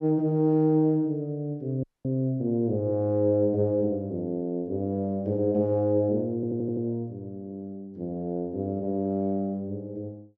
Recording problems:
audio cutting out; at 2 s
stutter; at 6.5 s

